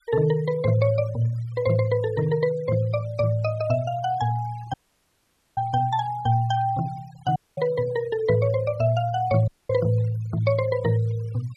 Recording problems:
noise reduction artefacts; signal-to-artefact ratio 23 dB
dropout; at 4.5 s for 1 s, at 7.5 s and at 9.5 s

